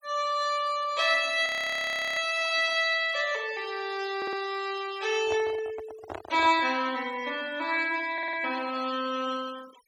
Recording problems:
denoising artefacts; signal-to-artefact ratio 20 dB
audio freezing; at 1.5 s for 0.5 s
audio stuttering; at 4 s and at 8 s
handling noise; from 5 to 6.5 s; peak -5 dB vs average level

